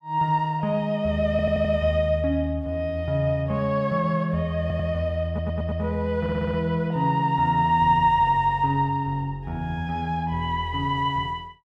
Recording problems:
audio stuttering; 4 times, first at 1.5 s

